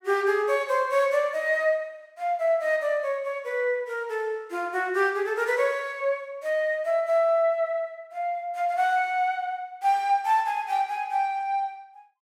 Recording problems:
none

